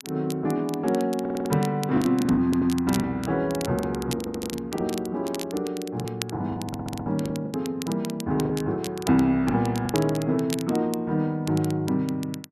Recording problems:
crackle; vinyl, SNR 14 dB
lost packets; 7% of the sound replaced, filled with the last packet
stutter; 4 times, first at 1 s

